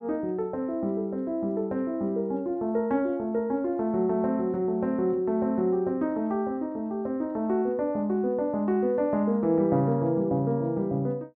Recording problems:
none

